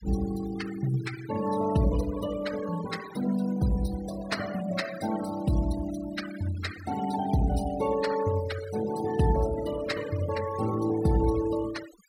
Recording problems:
denoising artefacts; signal-to-artefact ratio 13 dB

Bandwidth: 16 kHz